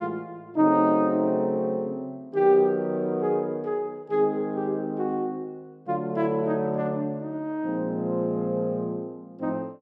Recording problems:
none

